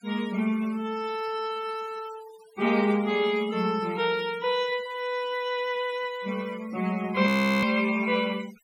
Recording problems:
denoising artefacts; signal-to-artefact ratio 19 dB
frozen audio; at 7.5 s

